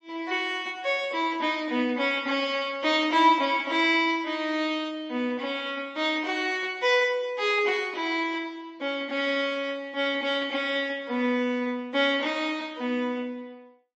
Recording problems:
codec artefacts; MP3, log-spectral distance 2 dB, nothing above 7.1 kHz

